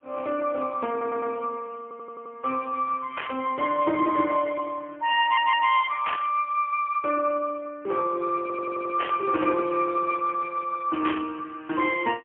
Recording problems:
telephone audio; 280 Hz to 3.1 kHz, AMR-NB, then MP3
audio stuttering; 4 times, first at 1 s
burst of static; 4 times, first at 3 s; peak -2 dB vs average level

